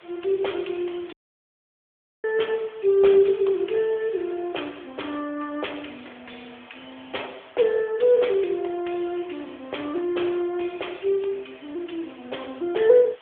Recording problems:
telephone audio; 320 Hz to 3.5 kHz, AMR-NB
background hiss; SNR 27 dB
dropout; at 1 s for 1 s

